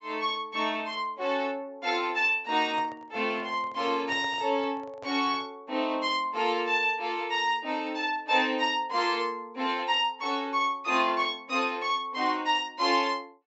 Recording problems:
treble missing; nothing above 8 kHz
handling noise; from 2.5 to 5.5 s; peak -10 dB vs average level

